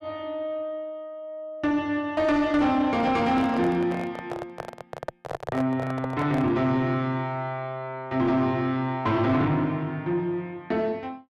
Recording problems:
distorted audio; soft clipping, signal-to-distortion ratio 11 dB
microphone handling noise; from 3 to 6.5 s; peak -2 dB vs average level

